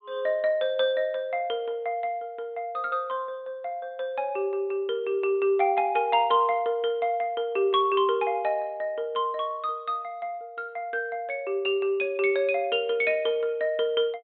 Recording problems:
treble missing; nothing above 4 kHz

